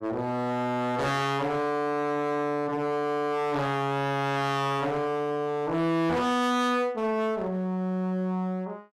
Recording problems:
distorted audio; hard clipping, uneven, signal-to-distortion ratio 7 dB

